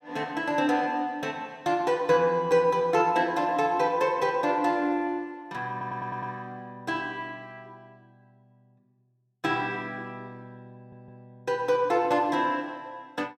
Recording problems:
audio stuttering; at 5.5 s and at 11 s

